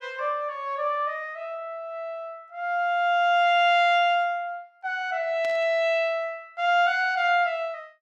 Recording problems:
static burst; at 5.5 s; peak -13 dB vs average level

